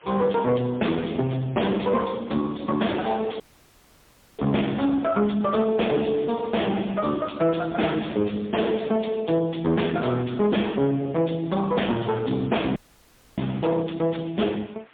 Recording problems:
phone line; 110 Hz to 3.7 kHz, AMR-NB, then MP3
distorted audio; soft clipping, signal-to-distortion ratio 7 dB
hiss; SNR 28 dB
audio cutting out; at 3.5 s for 1 s and at 13 s for 0.5 s

